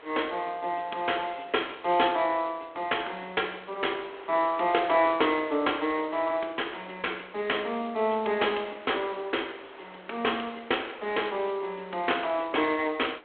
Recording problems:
phone line; 280 Hz to 3.4 kHz, G.726
wind noise; below 2.2 kHz, SNR 20 dB

